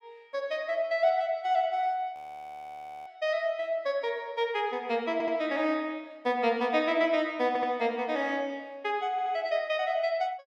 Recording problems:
audio freezing; at 2 s for 1 s
stutter; at 5 s, at 7.5 s and at 9 s

